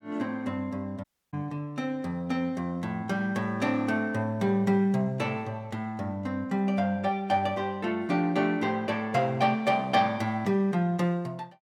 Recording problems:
dropout; at 1 s

